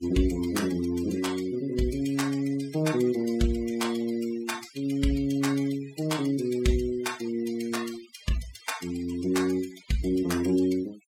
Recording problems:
noise reduction artefacts; signal-to-artefact ratio 15 dB

